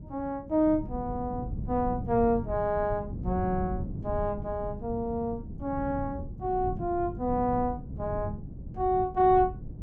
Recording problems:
wind noise; below 180 Hz, SNR 9 dB

